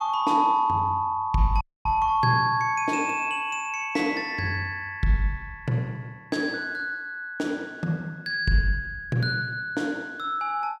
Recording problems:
dropout; at 1.5 s

